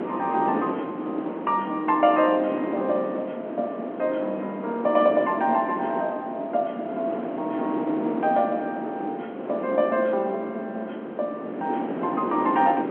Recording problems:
telephone audio; 240 Hz to 3.6 kHz, G.711
wind noise; below 580 Hz, SNR 6 dB

